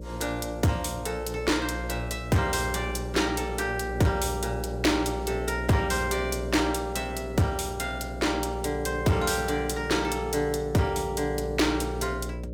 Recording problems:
distorted audio; hard clipping, uneven, signal-to-distortion ratio 11 dB
hum; 60 Hz, harmonics up to 600 Hz, SNR 9 dB

